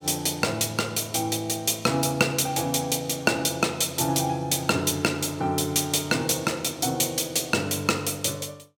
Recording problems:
none

